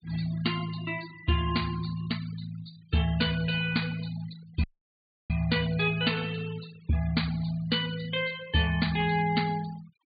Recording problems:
treble missing; nothing above 4.6 kHz
denoising artefacts; signal-to-artefact ratio 17 dB
audio cutting out; at 4.5 s for 0.5 s

